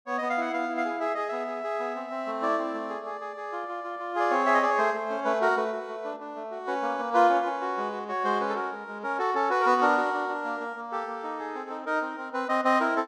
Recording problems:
none

